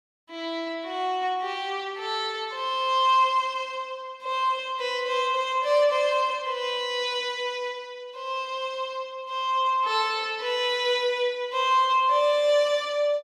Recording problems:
none

